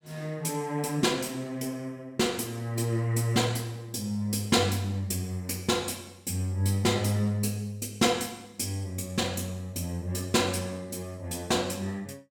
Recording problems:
none

